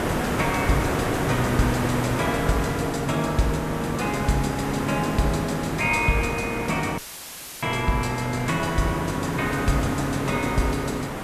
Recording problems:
hum; 50 Hz, harmonics up to 1.4 kHz, SNR 12 dB
background hiss; SNR 3 dB
audio cutting out; at 7 s for 0.5 s; filled with static

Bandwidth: 14 kHz